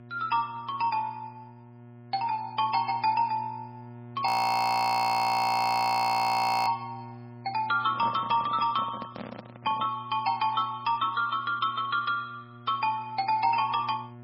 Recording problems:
lossy codec; MP3, log-spectral distance 2 dB, nothing above 18.9 kHz
electrical hum; 60 Hz, harmonics up to 1.4 kHz, SNR 20 dB
frozen audio; at 4.5 s for 2.5 s
microphone handling noise; from 8 to 10 s; peak -7 dB vs average level

